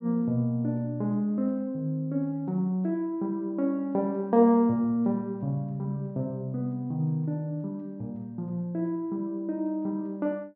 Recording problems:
none

